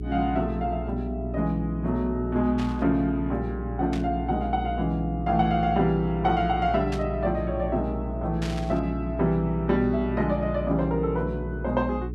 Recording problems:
electrical hum; 60 Hz, harmonics up to 420 Hz, SNR 7 dB
static burst; 4 times, first at 2.5 s; peak -7 dB vs average level

